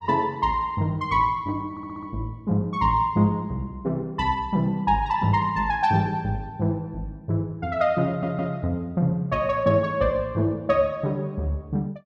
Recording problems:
stutter; at 1.5 s and at 8 s

